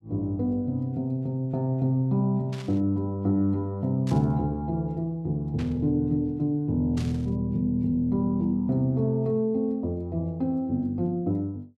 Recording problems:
static burst; 4 times, first at 2.5 s; peak -11 dB vs average level

